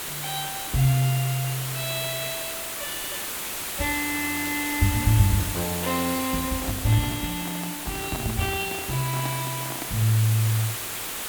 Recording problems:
background hiss; slope -1 dB per octave, SNR 4 dB
microphone handling noise; from 6.5 to 10 s; peak -4 dB vs average level

